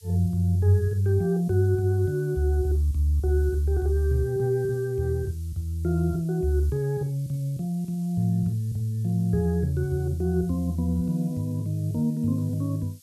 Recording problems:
background hiss; SNR 27 dB

